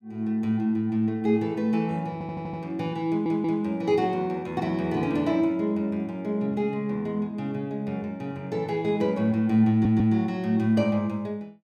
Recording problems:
audio stuttering; at 2 s, at 3 s and at 9.5 s

